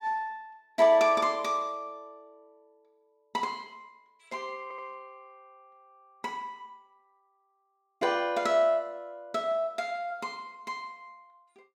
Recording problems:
stutter; at 4.5 s

